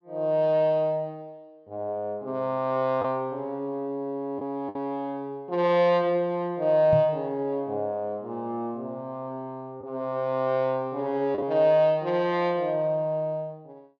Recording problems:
low-pass filter; nothing above 8 kHz
packet loss; 1.2% of the sound replaced, filled with the last packet
knock on the microphone; at 7 s; peak 0 dB vs average level

